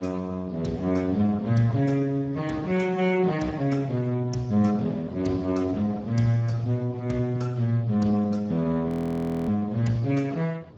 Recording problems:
lossy codec; Speex, then Speex, log-spectral distance 3 dB
rumble; below 330 Hz, SNR 19 dB
audio freezing; at 9 s for 0.5 s

